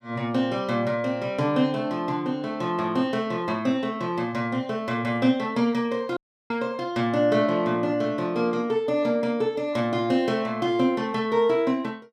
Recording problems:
dropout; at 6 s

